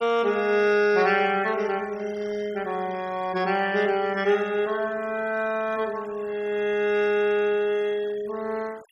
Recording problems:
noise reduction artefacts; signal-to-artefact ratio 22 dB

